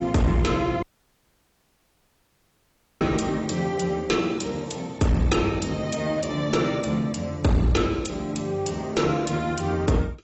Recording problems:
lossy compression; AAC, log-spectral distance 4 dB, nothing above 7.8 kHz
distorted audio; hard clipping, uneven, signal-to-distortion ratio 10 dB
audio cutting out; at 1 s for 2 s

